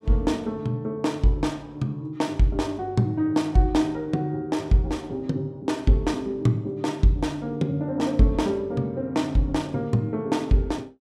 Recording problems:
none

